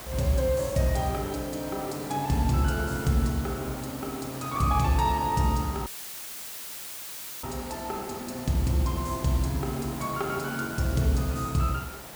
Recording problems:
hiss; slope -4 dB per octave, SNR 12 dB
dropout; at 6 s for 1.5 s; filled with static

